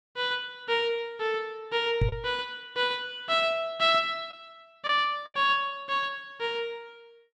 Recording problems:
lost packets; 2% of the sound replaced, filled with the last packet
microphone thump; at 2 s; peak +5 dB vs average level

